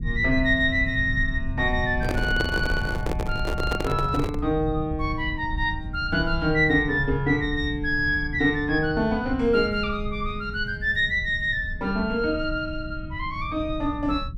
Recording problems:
low-frequency rumble; below 110 Hz, SNR 9 dB
handling noise; from 2 to 4.5 s; peak 0 dB vs average level

